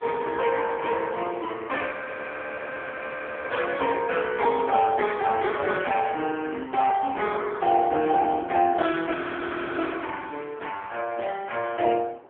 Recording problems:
telephone audio; 260 Hz to 3.4 kHz, AMR-NB
wind on the microphone; below 1 kHz, SNR 23 dB
frozen audio; at 2 s for 1.5 s and at 9 s for 0.5 s

